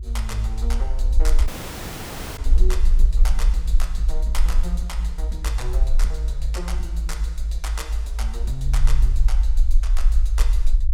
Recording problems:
low-frequency rumble; below 52 Hz, SNR -11 dB
audio cutting out; at 1.5 s for 1 s

